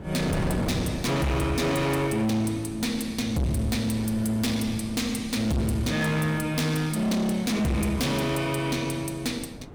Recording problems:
distortion; hard clipping, signal-to-distortion ratio 7 dB
wind noise; below 410 Hz, SNR 11 dB

